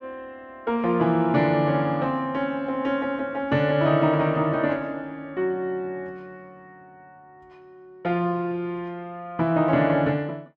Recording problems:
none

